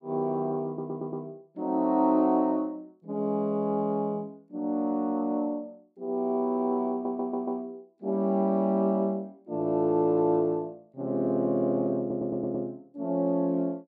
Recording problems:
stutter; at 0.5 s, at 7 s and at 12 s

